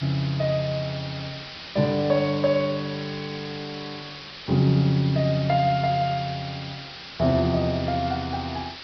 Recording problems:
treble cut off; nothing above 5.5 kHz
background hiss; SNR 12 dB

